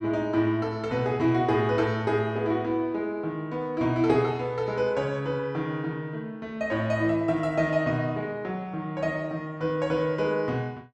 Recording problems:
none

